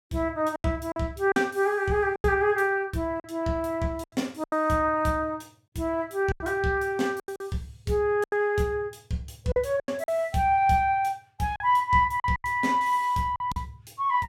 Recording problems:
lost packets; 8% of the sound replaced, filled with silence

